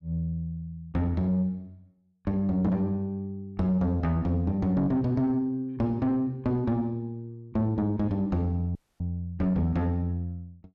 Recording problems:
distorted audio; soft clipping, signal-to-distortion ratio 11 dB
audio freezing; at 9 s

